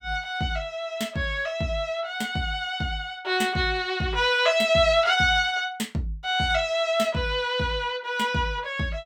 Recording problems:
none

